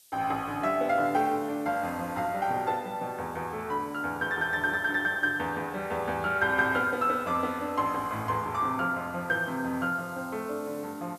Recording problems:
hiss; SNR 24 dB

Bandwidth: 14 kHz